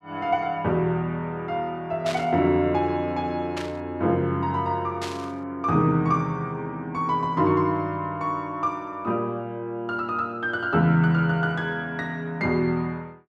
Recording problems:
burst of static; at 2 s, at 3.5 s and at 5 s; peak -5 dB vs average level

